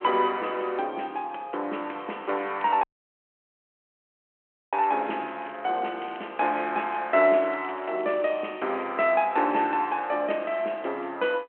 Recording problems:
telephone audio; 260 Hz to 3.3 kHz, G.726
crackling; from 2 to 8.5 s; loose cable, SNR 27 dB
audio cutting out; at 3 s for 2 s

